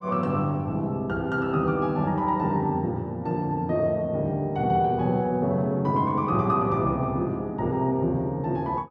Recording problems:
none

